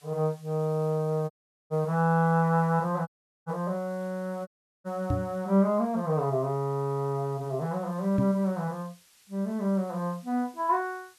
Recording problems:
background hiss; slope +3 dB per octave, SNR 28 dB
dropout; at 1.5 s, at 3 s and at 4.5 s
knock on the microphone; at 5 s and at 8 s; peak +3 dB vs average level

